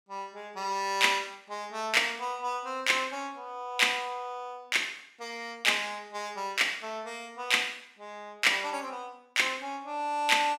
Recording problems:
none

